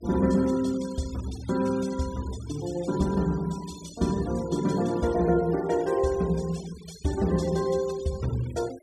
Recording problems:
denoising artefacts; signal-to-artefact ratio 19 dB

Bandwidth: 14.5 kHz